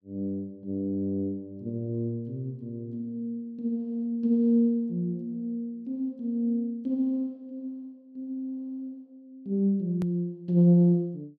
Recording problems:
click at an edit; at 10 s

